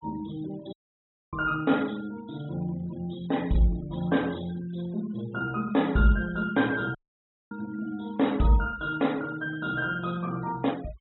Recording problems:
treble missing; nothing above 3.9 kHz
denoising artefacts; signal-to-artefact ratio 22 dB
audio cutting out; at 0.5 s for 0.5 s and at 7 s for 0.5 s

